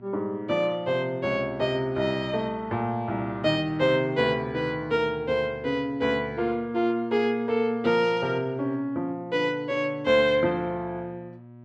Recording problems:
hum; 60 Hz, harmonics up to 1.3 kHz, SNR 22 dB

